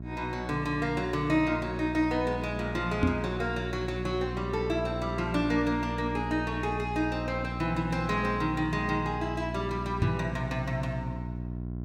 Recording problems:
electrical hum; 60 Hz, harmonics up to 720 Hz, SNR 6 dB
microphone thump; at 3 s and at 10 s; peak +7 dB vs average level

